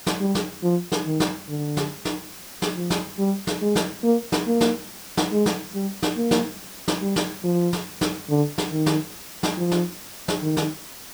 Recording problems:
background hiss; slope -1 dB per octave, SNR 14 dB

